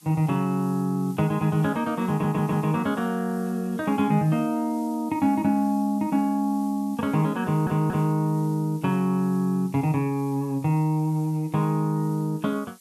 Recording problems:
background hiss; slope +3 dB per octave, SNR 25 dB
stutter; at 2 s and at 7.5 s

